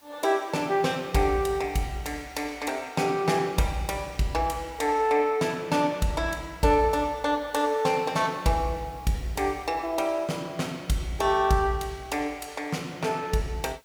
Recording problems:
background hiss; slope -1 dB per octave, SNR 30 dB

